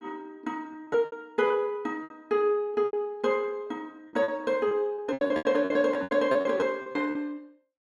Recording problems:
packet loss; 13% of the sound replaced, filled with repeated pitch periods

